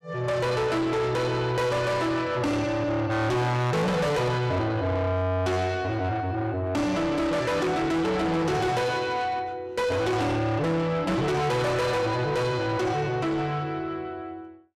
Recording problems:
distortion; soft clipping, signal-to-distortion ratio 6 dB

